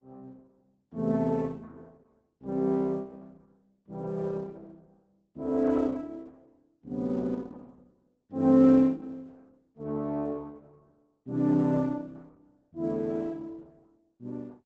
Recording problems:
lossy codec; Opus, log-spectral distance 2 dB, nothing above 7.8 kHz

